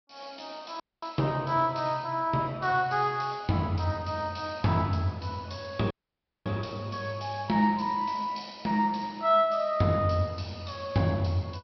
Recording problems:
low-pass filter; nothing above 5.5 kHz
dropout; at 1 s and at 6 s for 0.5 s

